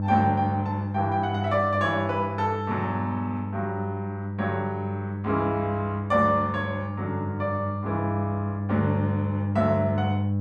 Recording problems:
hum; 50 Hz, harmonics up to 600 Hz, SNR 3 dB

